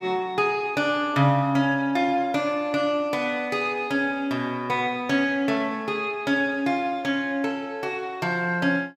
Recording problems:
none

